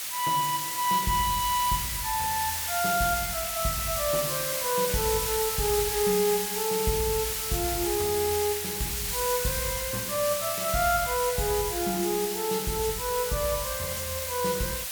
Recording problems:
hiss; slope +3 dB per octave, SNR 1 dB

